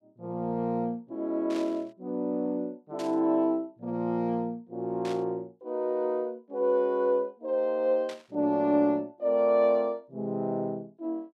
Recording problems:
burst of static; 4 times, first at 1.5 s; peak -10 dB vs average level

